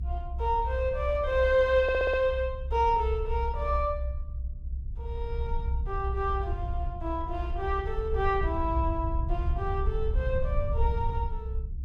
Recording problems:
rumble; below 66 Hz, SNR 4 dB
stutter; at 2 s

